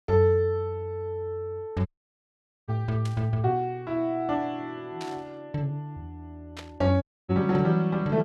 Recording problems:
dropout; at 2 s for 1 s and at 7 s
burst of static; at 3 s, at 5 s and at 6.5 s; peak -8 dB vs average level

